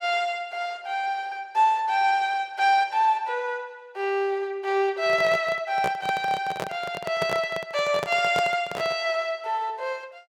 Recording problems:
handling noise; from 5 to 9 s; peak -1 dB vs average level

